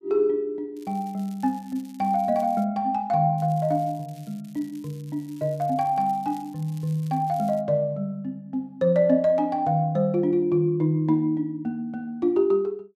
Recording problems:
crackle; from 1 to 2.5 s and from 3.5 to 7.5 s; loose cable, SNR 28 dB

